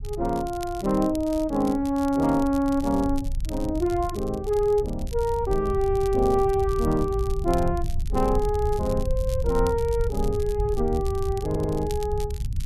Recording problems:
low-frequency rumble; below 80 Hz, SNR 7 dB
crackling; vinyl, SNR 21 dB
audio stuttering; at 11 s

